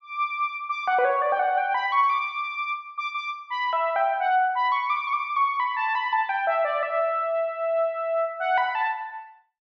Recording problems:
none

